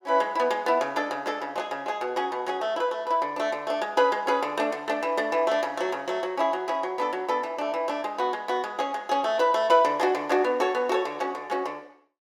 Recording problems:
none

